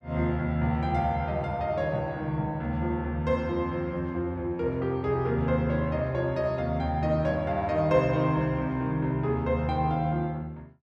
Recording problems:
none

